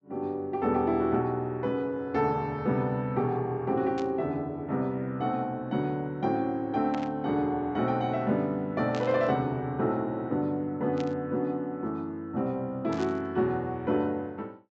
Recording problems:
treble cut off; nothing above 8 kHz
burst of static; 5 times, first at 4 s; peak -8 dB vs average level

